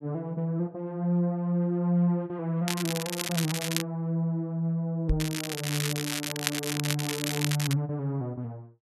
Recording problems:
crackling; from 2.5 to 4 s and from 5 to 7.5 s; loose cable, SNR 3 dB
knock on the microphone; at 5 s; peak +5 dB vs average level

